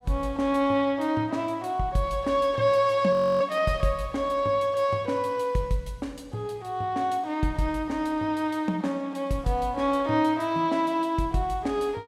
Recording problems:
audio freezing; at 3 s

